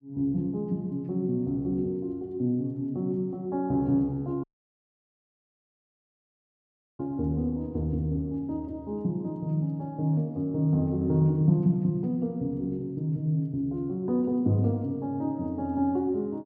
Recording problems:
dropout; at 4.5 s for 2.5 s

